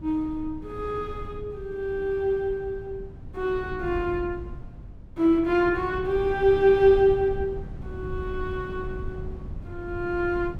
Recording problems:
wind on the microphone; below 130 Hz, SNR 14 dB

